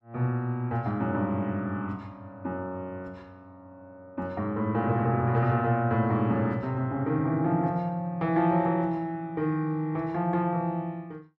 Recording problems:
none

